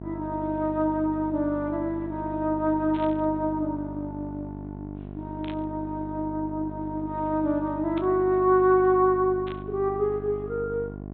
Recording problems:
treble cut off; nothing above 4 kHz
electrical hum; 50 Hz, harmonics up to 1.1 kHz, SNR 12 dB
static burst; 4 times, first at 3 s; peak -11 dB vs average level

